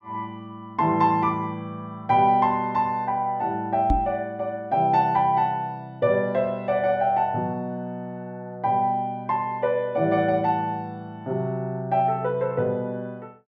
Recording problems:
microphone bump; at 4 s; peak +3 dB vs average level

